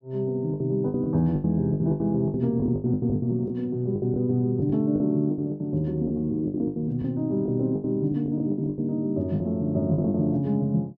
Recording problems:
packet loss; 15% of the sound replaced, filled with the last packet

